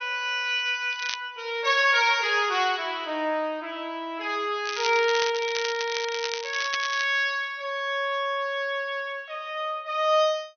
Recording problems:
treble missing; nothing above 6.3 kHz
crackling; at 1 s and from 4.5 to 7 s; loose cable, SNR 8 dB

